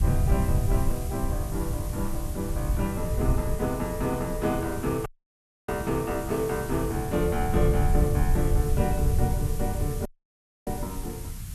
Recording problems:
background hiss; slope +1 dB per octave, SNR 12 dB
rumble; below 110 Hz, SNR -1 dB
dropout; at 5 s for 0.5 s and at 10 s for 0.5 s

